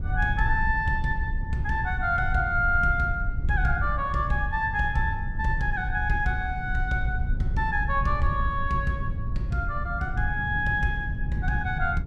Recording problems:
low-frequency rumble; below 70 Hz, SNR 7 dB
wind on the microphone; below 130 Hz, SNR 9 dB

